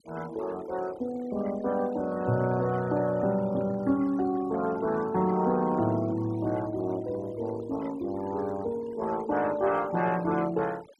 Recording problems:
noise reduction artefacts; signal-to-artefact ratio 20 dB

